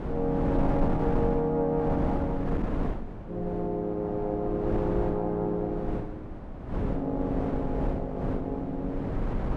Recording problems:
wind noise; below 320 Hz, SNR 3 dB

